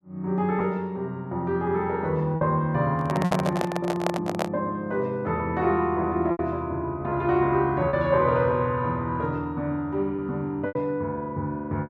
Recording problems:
lost packets; 3% of the sound replaced, filled with repeated pitch periods
handling noise; from 3 to 4.5 s; peak +4 dB vs average level

